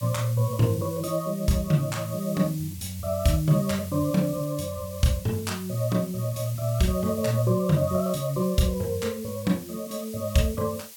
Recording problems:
background hiss; SNR 16 dB

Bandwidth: 17 kHz